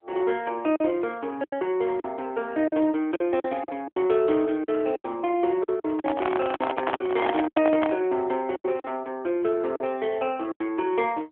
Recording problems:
phone line; 280 Hz to 3.5 kHz, AMR-NB
packet loss; 9% of the sound replaced, filled with silence
handling noise; from 6 to 8 s; peak +3 dB vs average level

